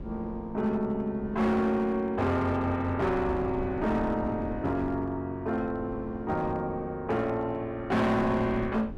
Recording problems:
distorted audio; hard clipping, signal-to-distortion ratio 12 dB
wind noise; below 300 Hz, SNR 14 dB

